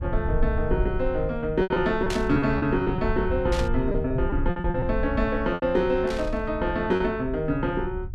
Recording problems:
rumble; below 80 Hz, SNR 7 dB
lost packets; 8% of the sound replaced, filled with repeated pitch periods
static burst; at 2 s, at 3.5 s and at 6 s; peak -3 dB vs average level

